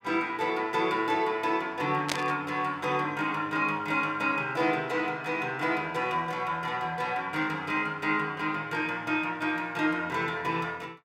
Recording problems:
burst of static; at 2 s; peak +3 dB vs average level

